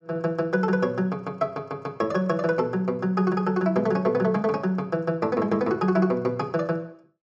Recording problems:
none

